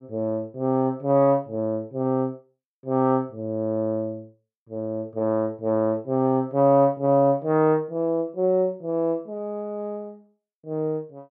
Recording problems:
none

